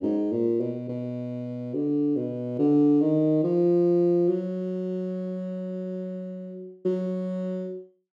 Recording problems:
none

